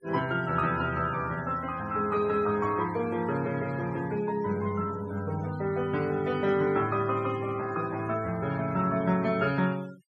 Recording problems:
noise reduction artefacts; signal-to-artefact ratio 19 dB

